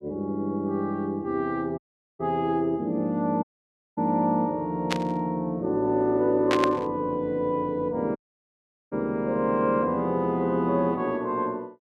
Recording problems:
dropout; at 2 s, at 3.5 s for 0.5 s and at 8 s for 1 s
static burst; at 5 s and at 6.5 s; peak +3 dB vs average level

